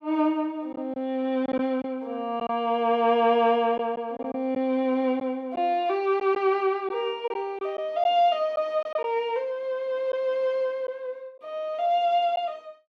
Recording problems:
packet loss; 3% of the sound replaced, filled with silence

